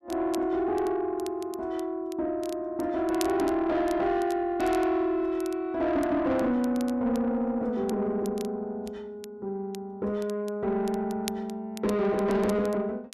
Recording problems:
distorted audio; soft clipping, signal-to-distortion ratio 11 dB
crackling; vinyl, SNR 20 dB

